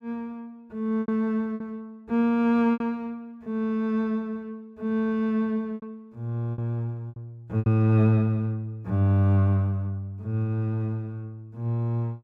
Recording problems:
packet loss; 5% of the sound replaced, filled with repeated pitch periods

